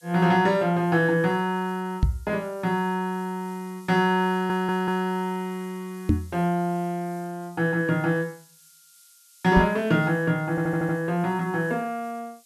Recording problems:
hiss; SNR 27 dB
microphone thump; at 2 s, at 6 s and at 9.5 s; peak +7 dB vs average level
stutter; at 4.5 s and at 11 s

